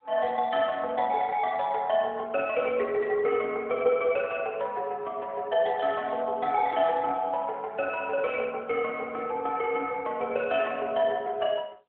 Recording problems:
telephone audio; 300 Hz to 3.4 kHz, AMR-NB

